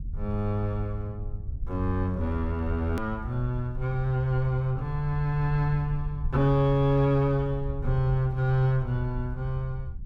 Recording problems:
low-frequency rumble; below 70 Hz, SNR 10 dB
hard cut with a click; at 3 s

